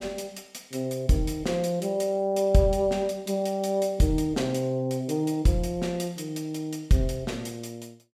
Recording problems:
none

